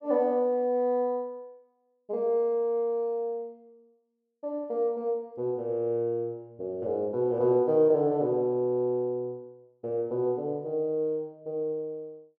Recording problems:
none

